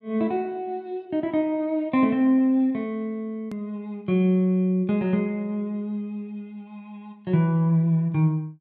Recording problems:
click at an edit; at 3.5 s

